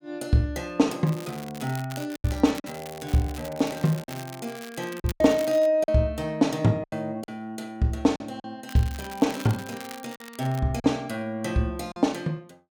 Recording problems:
packet loss; 5% of the sound replaced, filled with silence
crackle; from 1 to 5.5 s and from 8.5 to 11 s; loose cable, SNR 17 dB

